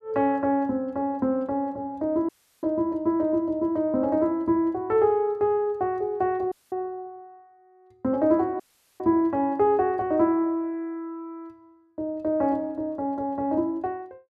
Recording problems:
audio cutting out; at 2.5 s, at 6.5 s and at 8.5 s

